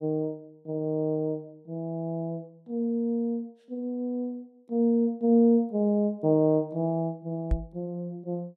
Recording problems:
microphone bump; at 7.5 s; peak +4 dB vs average level

